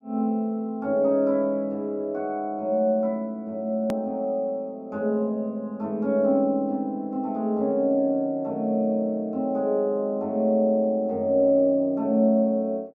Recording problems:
click at an edit; at 4 s

